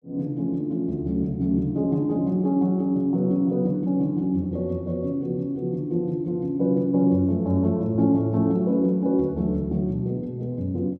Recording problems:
none

